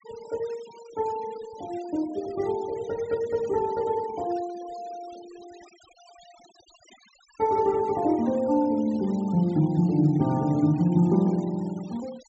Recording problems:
low-pass filter; nothing above 7.8 kHz
noise reduction artefacts; signal-to-artefact ratio 23 dB

